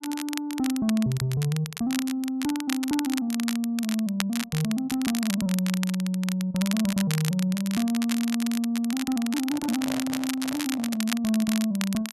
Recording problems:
crackling; vinyl, SNR 8 dB
handling noise; from 9.5 to 11 s; peak -5 dB vs average level

